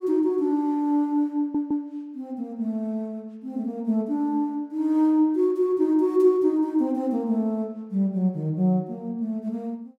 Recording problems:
stutter; at 1.5 s

